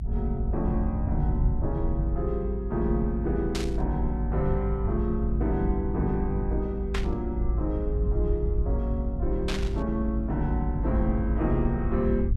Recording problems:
low-frequency rumble; below 76 Hz, strongest tone 54 Hz, SNR 0 dB
burst of static; at 3.5 s, at 7 s and at 9.5 s; peak +2 dB vs average level

